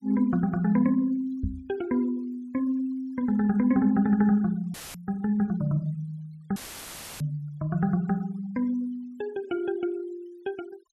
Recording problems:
denoising artefacts; signal-to-artefact ratio 28 dB
microphone thump; at 1.5 s; peak +1 dB vs average level
dropout; at 4.5 s and at 6.5 s for 0.5 s; filled with static

